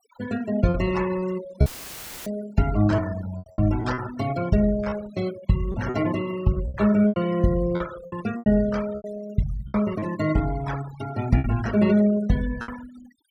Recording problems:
noise reduction artefacts; signal-to-artefact ratio 16 dB
lost packets; 8% of the sound replaced, filled with repeated pitch periods
audio cutting out; at 1.5 s for 0.5 s; filled with static

